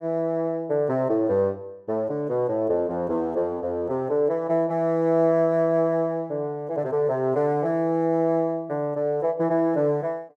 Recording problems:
none

